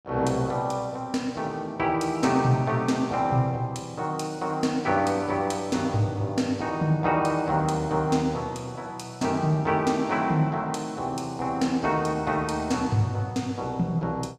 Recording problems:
none

